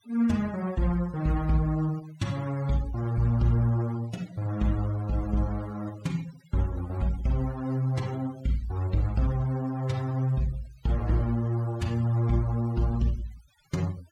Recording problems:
denoising artefacts; signal-to-artefact ratio 22 dB

